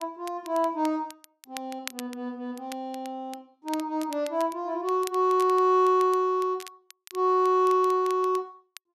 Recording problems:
crackling; vinyl, SNR 20 dB

